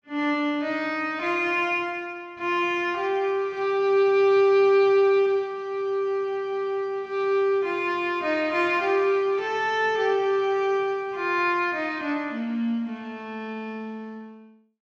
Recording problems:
low-pass filter; nothing above 8 kHz

